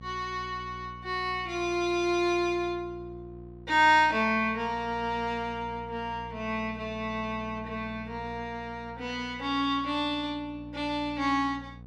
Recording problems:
hum; 60 Hz, harmonics up to 780 Hz, SNR 17 dB

